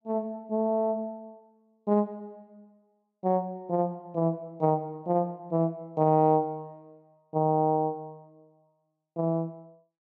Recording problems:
none

